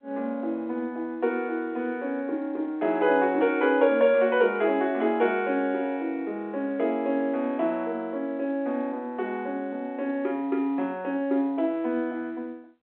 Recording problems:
phone line; 240 Hz to 3.4 kHz, G.711

